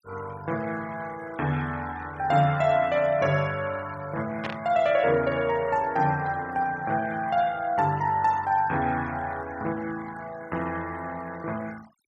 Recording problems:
denoising artefacts; signal-to-artefact ratio 19 dB
static burst; at 4.5 s; peak -2 dB vs average level

